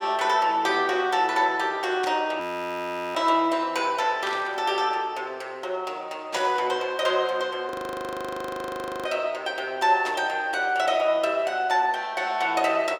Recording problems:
burst of static; 4 times, first at 2 s; peak -5 dB vs average level
frozen audio; at 2.5 s for 1 s and at 7.5 s for 1.5 s

